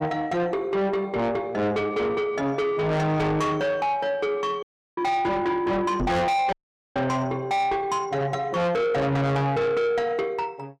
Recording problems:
distortion; soft clipping, signal-to-distortion ratio 6 dB
audio cutting out; at 4.5 s and at 6.5 s
knock on the microphone; at 6 s; peak +1 dB vs average level

